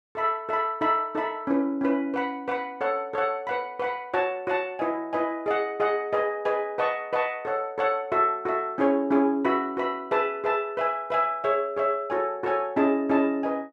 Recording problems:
none

